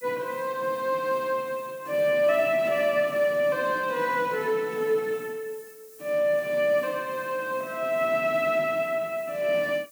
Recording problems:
background hiss; SNR 23 dB

